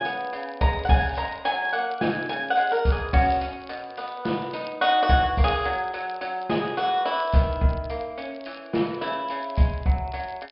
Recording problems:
low-pass filter; nothing above 5.5 kHz
crackling; vinyl, SNR 27 dB

